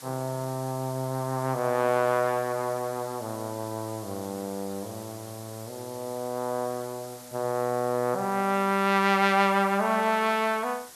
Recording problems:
hiss; SNR 18 dB

